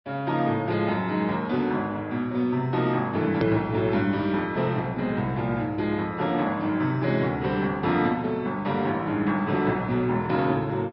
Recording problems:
low-pass filter; nothing above 5.3 kHz
codec artefacts; Vorbis, log-spectral distance 2 dB
hard cut with a click; at 3.5 s

